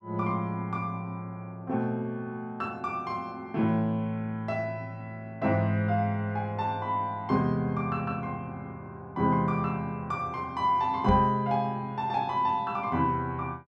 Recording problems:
microphone bump; at 11 s; peak +6 dB vs average level

